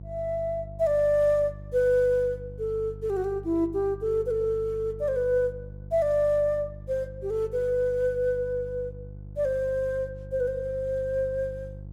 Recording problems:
electrical hum; 50 Hz, harmonics up to 500 Hz, SNR 15 dB

